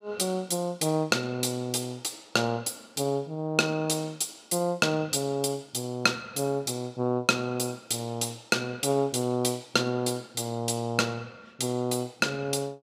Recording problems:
none

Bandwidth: 15.5 kHz